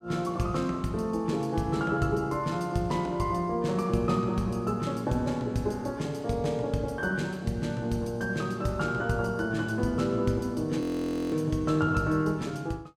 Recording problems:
audio freezing; at 11 s for 0.5 s

